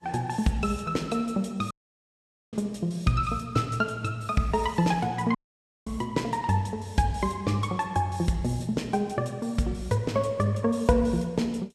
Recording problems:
lossy compression; Vorbis, log-spectral distance 2 dB, nothing above 13.1 kHz
audio cutting out; at 1.5 s for 1 s and at 5.5 s for 0.5 s

